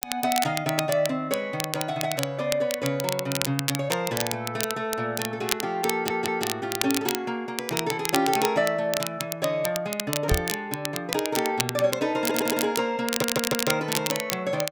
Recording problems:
crackle; vinyl, SNR 3 dB
stutter; at 6 s, at 12 s and at 13 s
microphone bump; at 10 s; peak +6 dB vs average level

